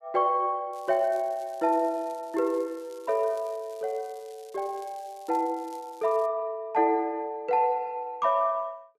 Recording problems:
crackling; from 0.5 to 6.5 s; loose cable, SNR 27 dB

